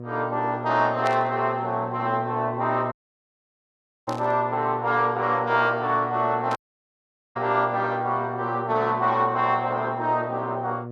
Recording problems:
hum; 60 Hz, harmonics up to 1.2 kHz, SNR 12 dB
static burst; at 1 s, at 4 s and at 6.5 s; peak -7 dB vs average level
audio cutting out; at 3 s for 1 s and at 6.5 s for 1 s

